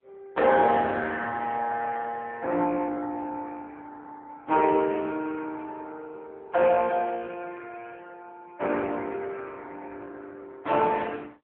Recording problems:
telephone audio; 320 Hz to 3.4 kHz, AMR-NB

